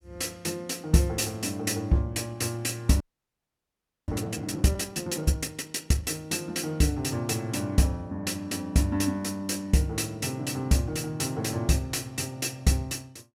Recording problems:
audio freezing; at 3 s for 1 s

